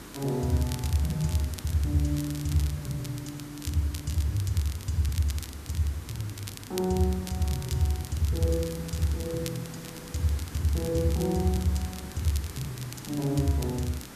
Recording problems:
hum; 50 Hz, harmonics up to 300 Hz, SNR 26 dB
background hiss; SNR 14 dB
crackle; vinyl, SNR 14 dB

